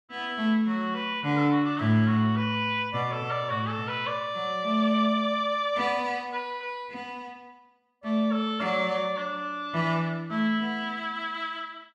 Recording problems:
none

